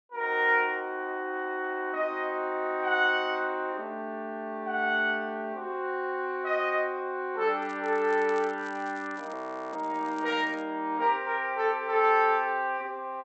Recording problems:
treble missing; nothing above 7.9 kHz
crackling; from 7.5 to 11 s; loose cable, SNR 27 dB
audio freezing; at 9.5 s

